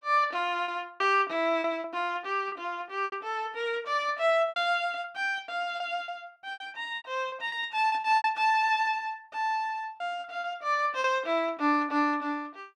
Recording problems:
packet loss; 9% of the sound replaced, filled with repeated pitch periods

